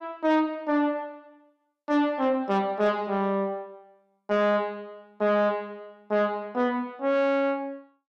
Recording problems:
distorted audio; soft clipping, signal-to-distortion ratio 11 dB

